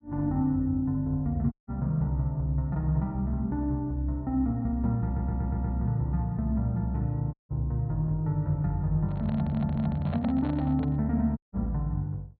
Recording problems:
treble missing; nothing above 4.4 kHz
dropout; at 1.5 s, at 7.5 s and at 11 s
stutter; at 5 s and at 9.5 s
handling noise; from 9 to 11 s; peak -7 dB vs average level

